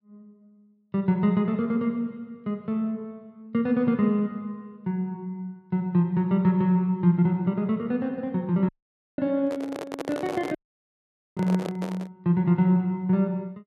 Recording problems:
dropout; at 8.5 s and at 11 s for 1 s
handling noise; from 9.5 to 12 s; peak -3 dB vs average level

